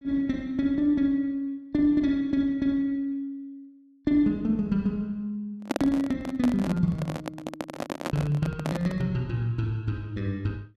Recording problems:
microphone handling noise; from 5.5 to 9 s; peak +3 dB vs average level

